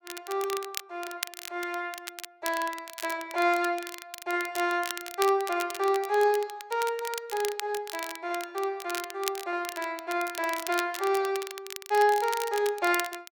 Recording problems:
crackle; vinyl, SNR 10 dB

